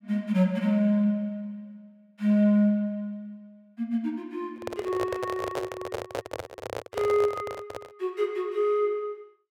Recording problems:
handling noise; from 4.5 to 8 s; peak -1 dB vs average level

